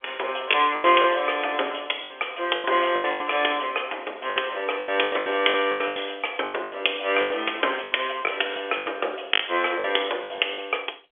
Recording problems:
phone line; 340 Hz to 3.4 kHz, G.711
packet loss; 14% of the sound replaced, filled with the last packet

